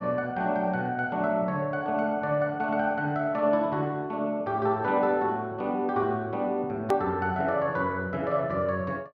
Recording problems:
hard cut with a click; at 7 s

